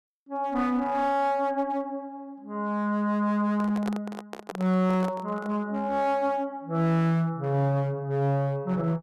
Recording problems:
distortion; hard clipping, uneven, signal-to-distortion ratio 10 dB
microphone handling noise; from 3.5 to 5.5 s; peak -4 dB vs average level

